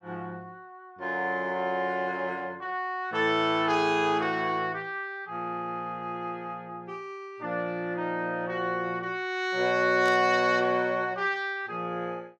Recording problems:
burst of static; at 10 s; peak -8 dB vs average level

